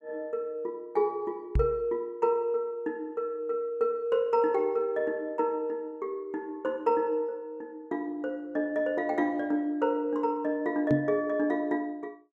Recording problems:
microphone thump; at 1.5 s and at 11 s; peak +6 dB vs average level

